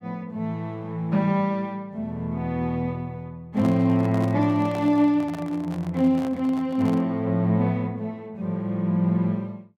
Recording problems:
handling noise; from 3.5 to 7 s; peak -8 dB vs average level

